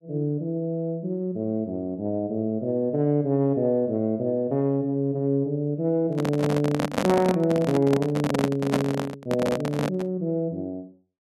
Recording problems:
handling noise; from 6 to 10 s; peak +4 dB vs average level

